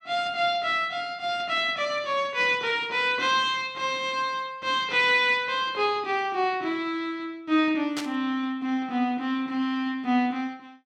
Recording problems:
static burst; at 8 s; peak -3 dB vs average level

